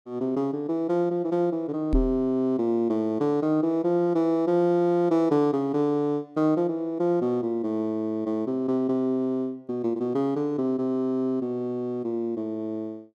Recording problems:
knock on the microphone; at 2 s; peak +3 dB vs average level

